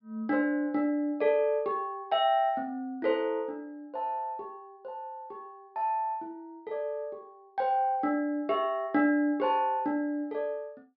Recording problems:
low-pass filter; nothing above 5.5 kHz

